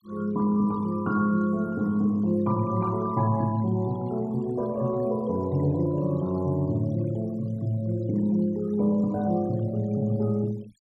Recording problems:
noise reduction artefacts; signal-to-artefact ratio 26 dB

